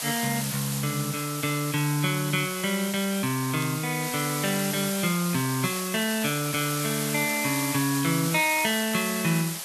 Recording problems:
background hiss; slope +1 dB per octave, SNR 4 dB
crackling; vinyl, SNR 28 dB

